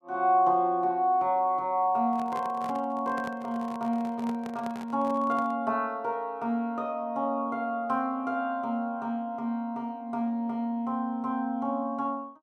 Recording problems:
microphone handling noise; from 2 to 5.5 s; peak -8 dB vs average level

